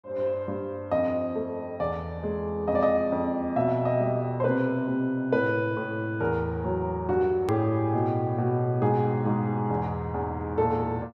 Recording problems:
click at an edit; at 7.5 s

